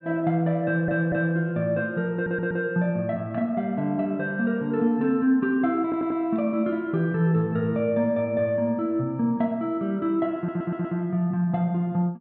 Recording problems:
audio stuttering; 4 times, first at 0.5 s

